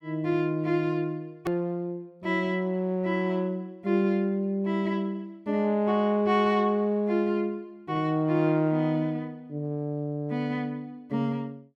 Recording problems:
edit click; at 1.5 s

